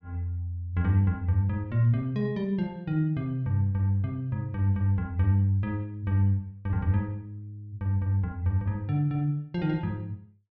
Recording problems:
none

